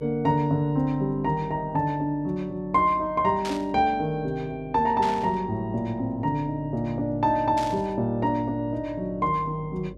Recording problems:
hum; 50 Hz, harmonics up to 600 Hz, SNR 21 dB
static burst; at 3.5 s, at 5 s and at 7.5 s; peak -6 dB vs average level

